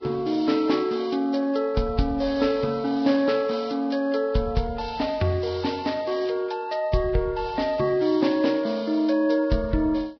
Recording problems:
codec artefacts; Vorbis, log-spectral distance 4 dB, nothing above 5.5 kHz

